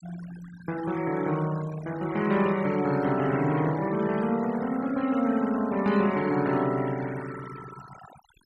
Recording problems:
noise reduction artefacts; signal-to-artefact ratio 16 dB

